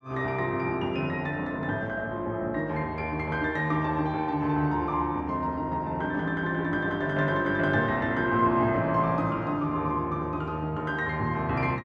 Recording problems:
none

